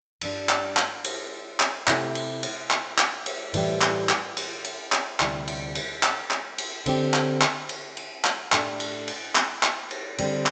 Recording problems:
low-pass filter; nothing above 8 kHz

